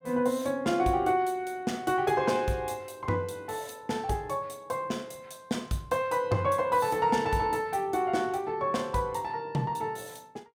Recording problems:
none

